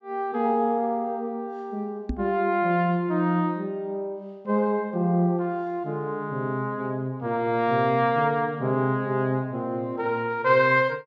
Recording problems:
treble missing; nothing above 8 kHz
microphone thump; at 2 s; peak 0 dB vs average level

